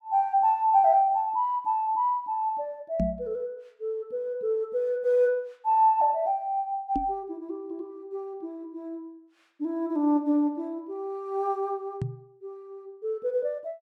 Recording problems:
knock on the microphone; at 3 s, at 7 s and at 12 s; peak +1 dB vs average level

